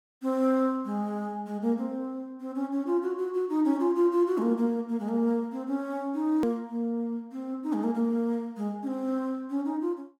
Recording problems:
hard cut with a click; at 6.5 s

